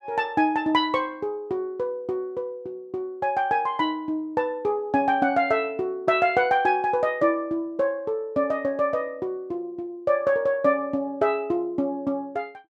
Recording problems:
none

